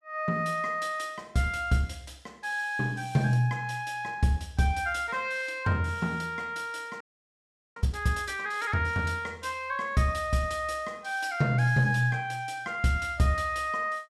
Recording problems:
frozen audio; at 7 s for 1 s

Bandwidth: 14.5 kHz